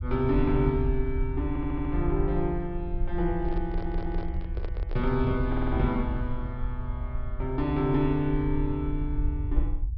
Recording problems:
low-pass filter; nothing above 5.5 kHz
rumble; below 66 Hz, SNR 4 dB
stutter; at 1.5 s, at 3.5 s and at 5.5 s
microphone handling noise; from 3.5 to 5.5 s; peak -7 dB vs average level

